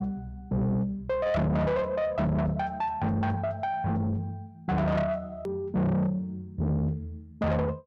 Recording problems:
distortion; soft clipping, signal-to-distortion ratio 6 dB
hard cut with a click; at 5.5 s

